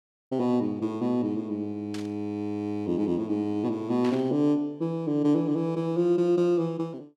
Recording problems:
static burst; at 2 s and at 4 s; peak -9 dB vs average level

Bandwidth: 13.5 kHz